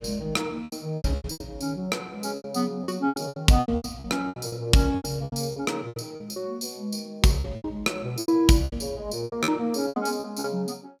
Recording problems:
packet loss; 17% of the sound replaced, filled with repeated pitch periods

